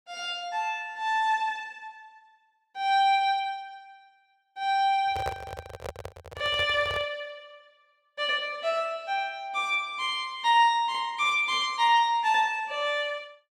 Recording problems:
microphone handling noise; from 5 to 7 s; peak -3 dB vs average level

